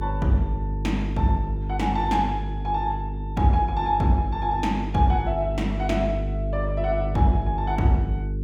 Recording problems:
hum; 50 Hz, harmonics up to 450 Hz, SNR 4 dB

